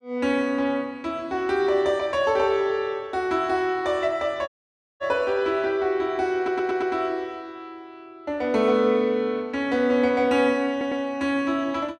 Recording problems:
dropout; at 4.5 s for 0.5 s
audio stuttering; at 6.5 s and at 11 s

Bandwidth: 12 kHz